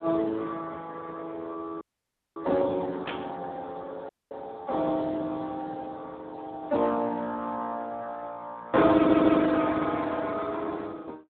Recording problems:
phone line; 240 Hz to 2.3 kHz, Speex
audio cutting out; at 2 s for 0.5 s and at 4 s
burst of static; at 3 s; peak -2 dB vs average level
stutter; at 9 s

